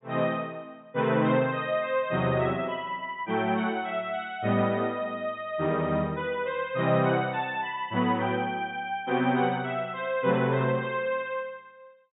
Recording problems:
treble cut off; nothing above 4 kHz

